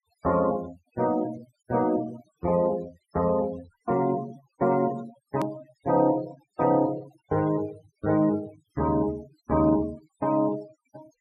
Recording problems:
noise reduction artefacts; signal-to-artefact ratio 19 dB
hard cut with a click; at 5.5 s

